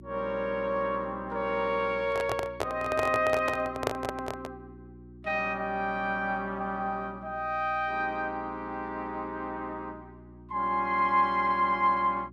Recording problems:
hum; 60 Hz, harmonics up to 360 Hz, SNR 19 dB
microphone handling noise; from 2 to 4.5 s; peak +4 dB vs average level

